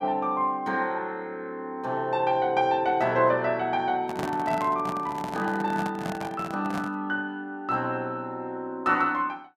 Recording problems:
microphone handling noise; from 4 to 7 s; peak -2 dB vs average level

